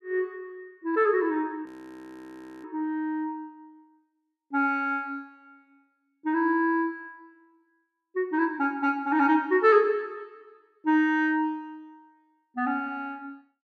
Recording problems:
frozen audio; at 1.5 s for 1 s

